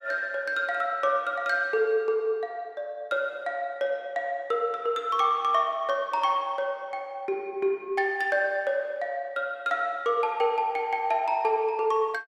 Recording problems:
none

